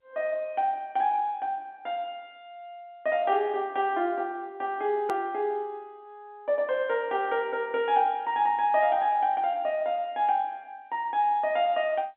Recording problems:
phone line; 190 Hz to 3.8 kHz, G.711
edit click; at 5 s

